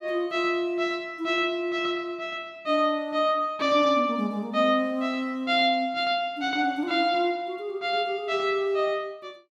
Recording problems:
none

